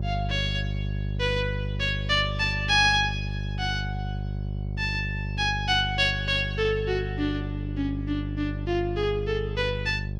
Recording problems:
hum; 50 Hz, harmonics up to 600 Hz, SNR 5 dB

